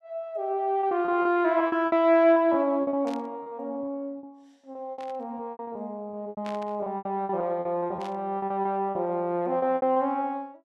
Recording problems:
lost packets; 14% of the sound replaced, filled with repeated pitch periods
burst of static; 4 times, first at 3 s; peak -12 dB vs average level

